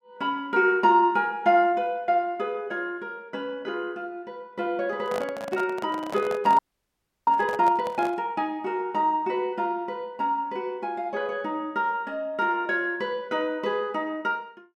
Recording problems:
microphone handling noise; from 5 to 8 s; peak -4 dB vs average level
frozen audio; at 6.5 s for 0.5 s

